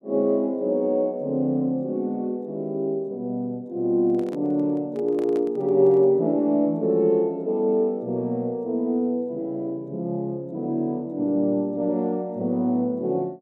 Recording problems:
microphone handling noise; from 4 to 6 s; peak -11 dB vs average level

